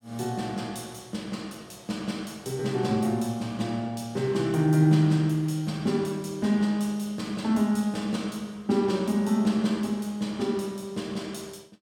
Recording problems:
none

